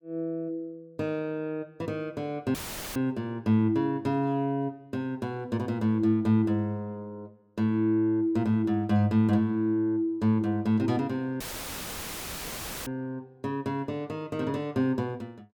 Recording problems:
audio cutting out; at 2.5 s and at 11 s for 1.5 s; filled with static

